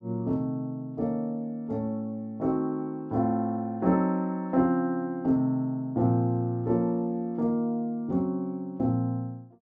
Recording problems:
none

